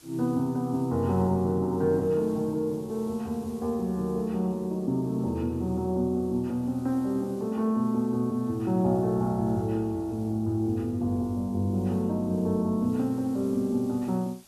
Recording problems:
background hiss; SNR 27 dB

